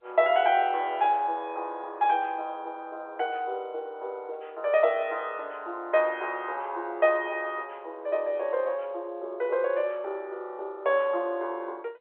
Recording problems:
telephone audio; 320 Hz to 3.8 kHz, G.711

